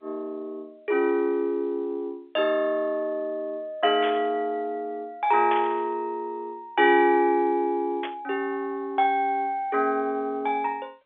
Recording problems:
phone line; 300 Hz to 3.5 kHz, G.711
burst of static; at 4 s, at 5.5 s and at 8 s; peak -4 dB vs average level

